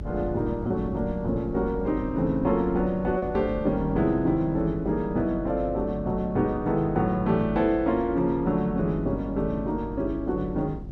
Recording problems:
mains hum; 50 Hz, harmonics up to 400 Hz, SNR 13 dB
wind noise; below 180 Hz, SNR 16 dB
lost packets; 0.6% of the sound replaced, filled with repeated pitch periods

